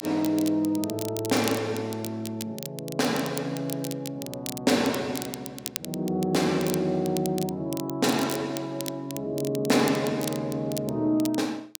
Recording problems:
crackle; vinyl, SNR 11 dB

